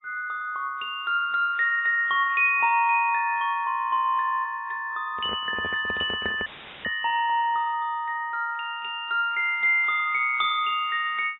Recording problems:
low-pass filter; nothing above 3 kHz
lossy compression; MP3, log-spectral distance 2 dB
handling noise; from 5 to 7 s; peak -6 dB vs average level
audio cutting out; at 6.5 s; filled with static

